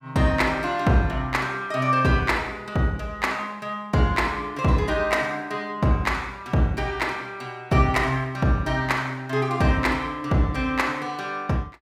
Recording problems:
none

